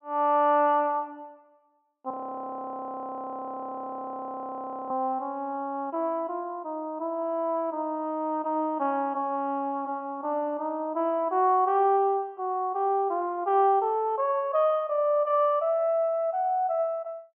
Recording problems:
low-pass filter; nothing above 3.1 kHz
audio freezing; at 2 s for 3 s

